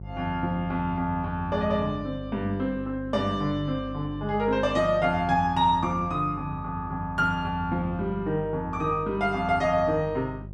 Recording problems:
hum; 50 Hz, harmonics up to 550 Hz, SNR 13 dB

